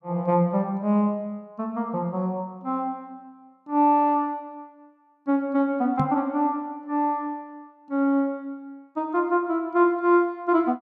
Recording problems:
microphone thump; at 6 s; peak +2 dB vs average level

